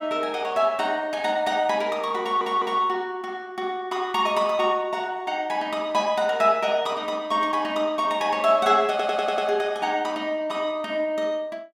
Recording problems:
audio stuttering; at 2 s and at 9 s

